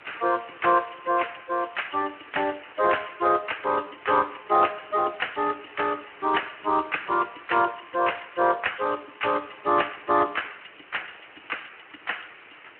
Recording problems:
telephone audio; 260 Hz to 3.1 kHz, Speex
hiss; SNR 20 dB

